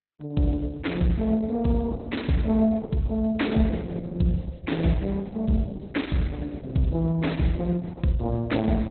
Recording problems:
lossy codec; Opus, log-spectral distance 5 dB, nothing above 4.1 kHz

